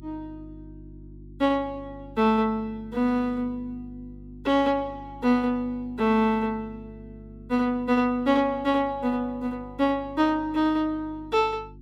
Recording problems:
hum; 50 Hz, harmonics up to 350 Hz, SNR 21 dB

